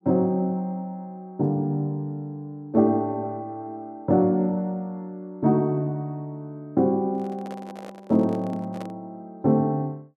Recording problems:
handling noise; from 7 to 9 s; peak -9 dB vs average level

